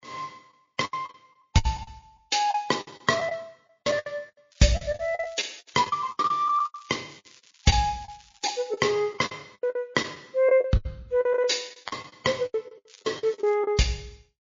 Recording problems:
lossy codec; MP3, log-spectral distance 5 dB, nothing above 6.9 kHz
packet loss; 18% of the sound replaced, filled with the last packet
crackle; from 4.5 to 8.5 s and at 13 s; loose cable, SNR 27 dB

